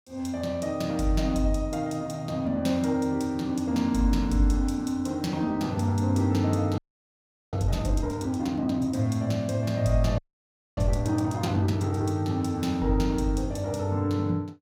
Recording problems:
audio freezing; at 7 s for 1 s and at 10 s for 0.5 s

